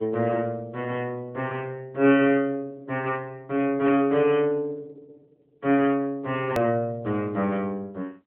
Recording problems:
telephone audio; 190 Hz to 3.9 kHz, AMR-NB
edit click; at 6.5 s

